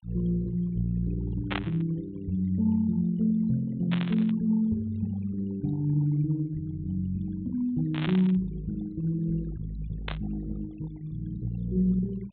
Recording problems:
treble cut off; nothing above 4 kHz
noise reduction artefacts; signal-to-artefact ratio 22 dB
static burst; 4 times, first at 1.5 s; peak +1 dB vs average level

